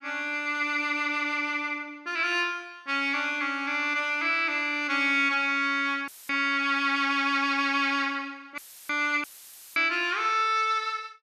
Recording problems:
audio cutting out; at 6 s, at 8.5 s and at 9 s for 0.5 s; filled with static

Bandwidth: 14 kHz